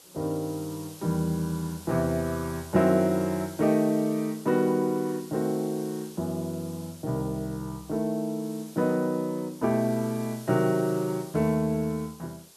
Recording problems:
hiss; SNR 19 dB

